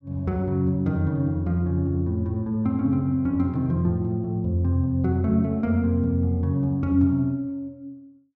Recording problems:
none

